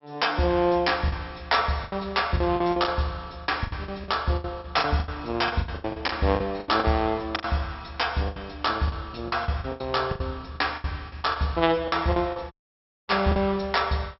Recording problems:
treble missing; nothing above 5.6 kHz
packet loss; 15% of the sound replaced, filled with the last packet
dropout; at 13 s for 0.5 s

